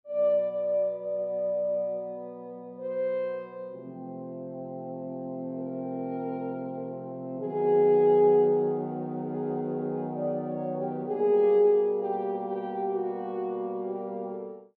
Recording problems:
none

